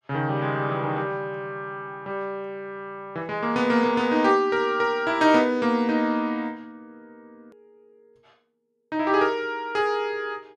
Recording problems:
edit click; at 7.5 s

